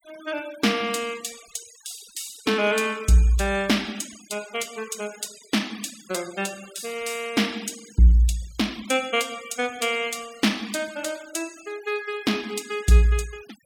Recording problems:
denoising artefacts; signal-to-artefact ratio 20 dB

